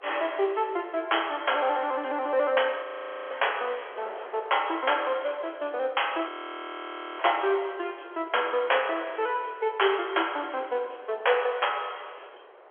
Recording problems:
telephone audio; 340 Hz to 3.3 kHz, G.711
wind on the microphone; below 1.2 kHz, SNR 22 dB
frozen audio; at 3 s and at 6.5 s for 1 s

